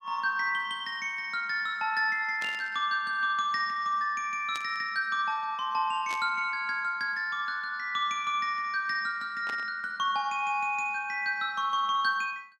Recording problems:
static burst; 4 times, first at 2.5 s; peak -7 dB vs average level

